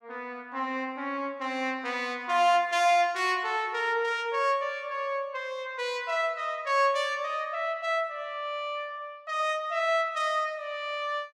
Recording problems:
none

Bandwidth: 14.5 kHz